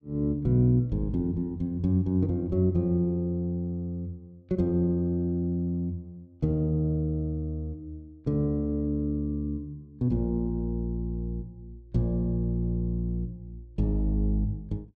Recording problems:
none

